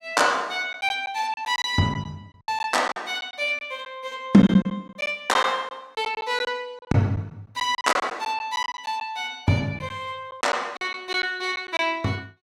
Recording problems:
lost packets; 9% of the sound replaced, filled with silence

